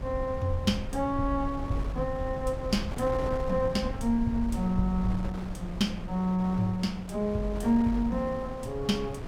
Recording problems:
low-frequency rumble; below 94 Hz, SNR 11 dB
wind on the microphone; below 700 Hz, SNR 13 dB

